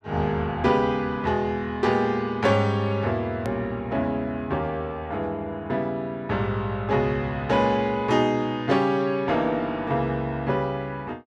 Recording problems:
edit click; at 3.5 s

